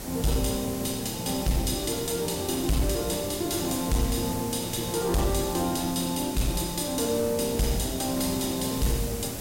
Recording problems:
distorted audio; soft clipping, signal-to-distortion ratio 12 dB
hiss; SNR 7 dB

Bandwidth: 16 kHz